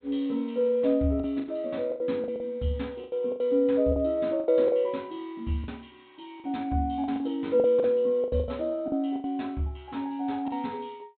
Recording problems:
treble missing; nothing above 4 kHz
lost packets; 11% of the sound replaced, filled with the last packet

